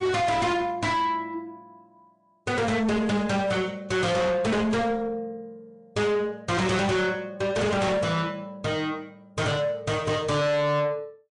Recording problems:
lossy compression; MP3, log-spectral distance 2 dB
distorted audio; soft clipping, signal-to-distortion ratio 7 dB

